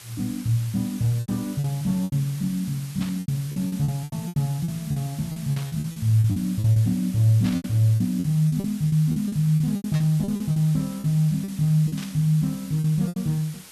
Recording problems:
background hiss; slope 0 dB per octave, SNR 18 dB
lost packets; 14% of the sound replaced, filled with repeated pitch periods
static burst; 5 times, first at 3 s; peak -9 dB vs average level

